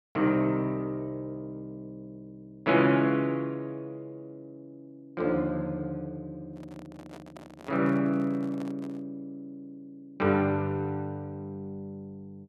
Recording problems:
microphone handling noise; from 6.5 to 9 s; peak -11 dB vs average level

